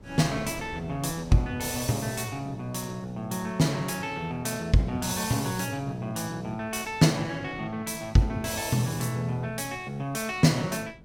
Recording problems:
wind on the microphone; below 290 Hz, SNR 21 dB

